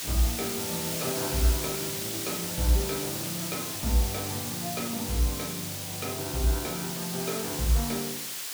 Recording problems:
hiss; slope +2 dB per octave, SNR 1 dB

